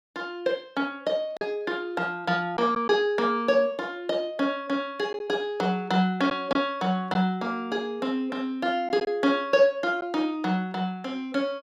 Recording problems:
packet loss; 1.6% of the sound replaced, filled with silence

